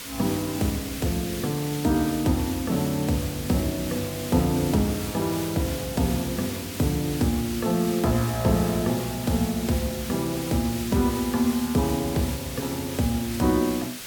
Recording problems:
background hiss; slope 0 dB per octave, SNR 9 dB

